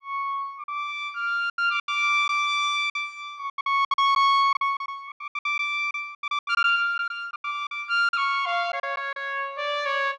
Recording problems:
lost packets; 14% of the sound replaced, filled with silence

